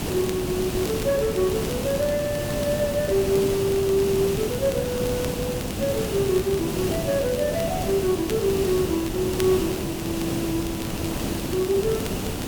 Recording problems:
hiss; SNR 3 dB
crackle; vinyl, SNR 18 dB

